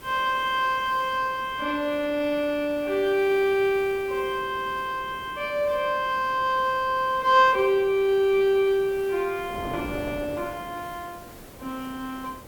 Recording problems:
hiss; slope -2 dB per octave, SNR 24 dB
wind on the microphone; below 620 Hz, SNR 20 dB

